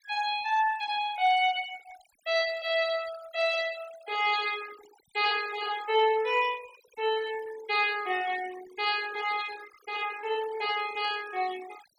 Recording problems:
noise reduction artefacts; signal-to-artefact ratio 17 dB
static burst; at 11 s; peak -18 dB vs average level

